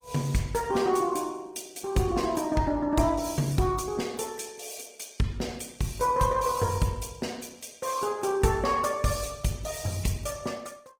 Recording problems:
lossy codec; Opus, log-spectral distance 6 dB, nothing above 19 kHz

